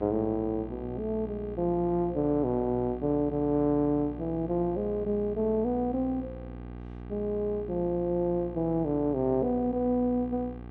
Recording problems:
mains hum; 60 Hz, harmonics up to 1.3 kHz, SNR 13 dB

